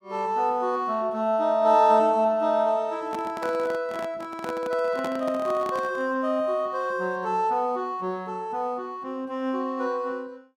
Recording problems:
handling noise; from 3 to 6 s; peak -4 dB vs average level

